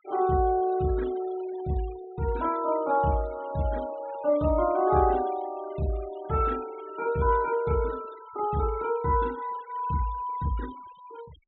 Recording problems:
treble missing; nothing above 3.8 kHz
denoising artefacts; signal-to-artefact ratio 22 dB

